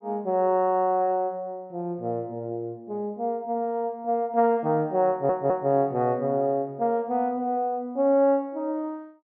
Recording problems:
treble missing; nothing above 8 kHz
stutter; at 5 s

